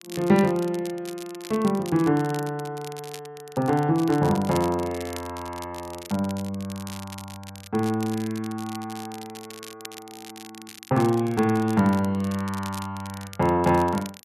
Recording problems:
crackle; vinyl, SNR 17 dB

